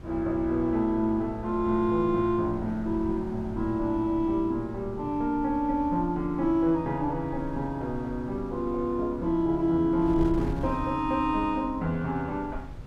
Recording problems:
wind noise; below 110 Hz, SNR 15 dB

